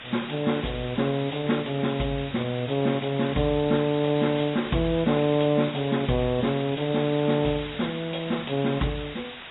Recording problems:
lossy codec; AAC, log-spectral distance 20 dB, nothing above 3.8 kHz
background hiss; SNR 13 dB

